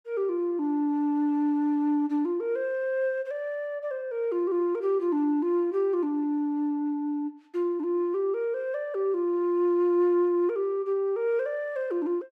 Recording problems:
none

